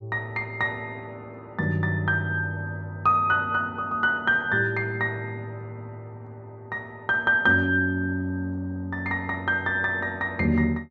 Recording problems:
none

